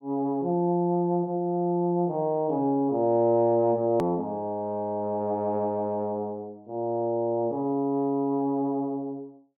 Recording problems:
hard cut with a click; at 4 s

